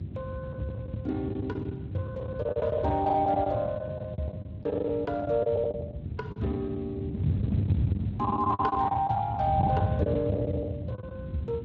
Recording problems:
codec artefacts; Speex, log-spectral distance 2 dB
hum; 50 Hz, harmonics up to 400 Hz, SNR 19 dB
wind on the microphone; below 190 Hz, SNR 4 dB
packet loss; 17% of the sound replaced, filled with the last packet

